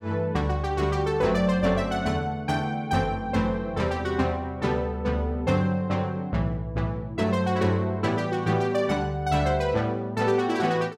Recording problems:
none

